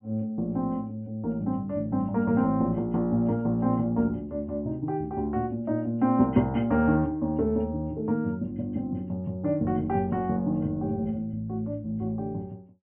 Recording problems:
treble cut off; nothing above 3.2 kHz

